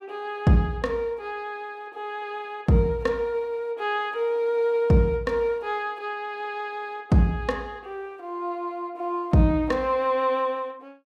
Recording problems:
none

